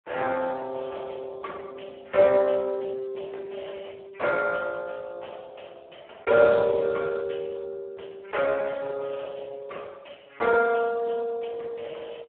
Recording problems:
telephone audio; 340 Hz to 2.1 kHz, Speex

